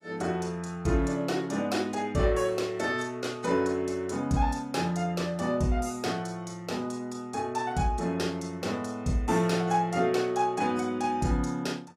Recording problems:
lossy compression; AAC, log-spectral distance 2 dB

